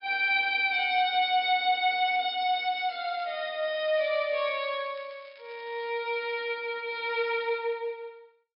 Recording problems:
treble cut off; nothing above 5.5 kHz
crackle; from 2.5 to 6 s; loose cable, SNR 28 dB

